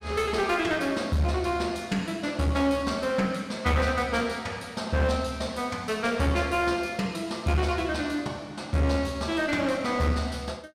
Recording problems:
distortion; hard clipping, uneven, signal-to-distortion ratio 10 dB

